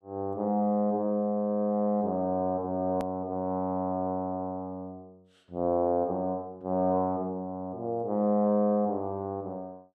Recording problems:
click at an edit; at 3 s

